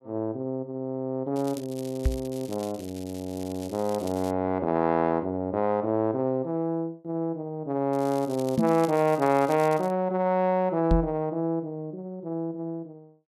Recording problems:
crackling; from 1.5 to 4.5 s and from 8 to 10 s; loose cable, SNR 19 dB
knock on the microphone; at 2 s, at 8.5 s and at 11 s; peak +6 dB vs average level

